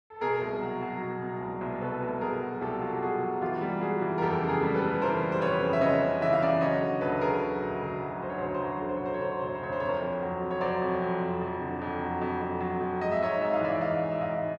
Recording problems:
none

